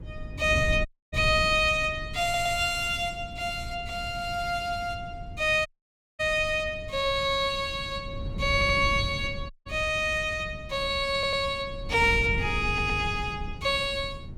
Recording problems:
wind noise; below 140 Hz, SNR 11 dB
dropout; at 1 s, at 5.5 s for 0.5 s and at 9.5 s
audio stuttering; 4 times, first at 2 s

